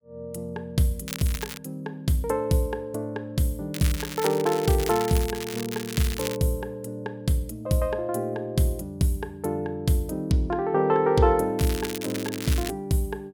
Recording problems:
crackle; at 1 s, from 3.5 to 6.5 s and from 12 to 13 s; loose cable, SNR 9 dB

